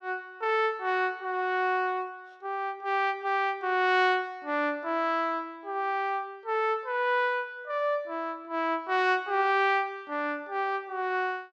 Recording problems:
none

